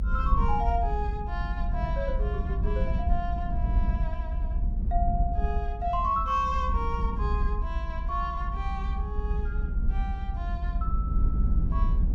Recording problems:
rumble; below 66 Hz, SNR -3 dB

